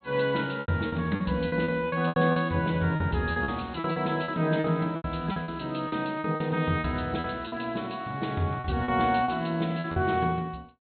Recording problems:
low-pass filter; nothing above 4.2 kHz
lost packets; 12% of the sound replaced, filled with repeated pitch periods

